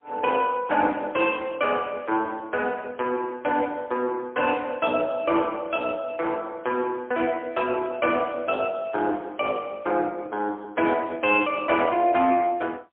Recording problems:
phone line; 260 Hz to 3.3 kHz, AMR-NB, then MP3

